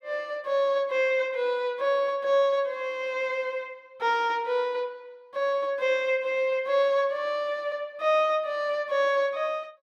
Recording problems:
none

